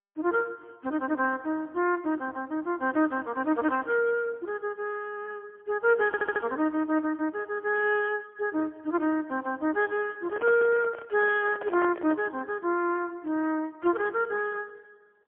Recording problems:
telephone audio; 260 Hz to 3.3 kHz, AMR-NB, then MP3
stutter; at 6 s
handling noise; from 10 to 12 s; peak -6 dB vs average level

